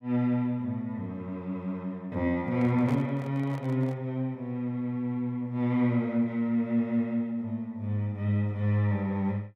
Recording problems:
microphone handling noise; from 2.5 to 4 s; peak -8 dB vs average level

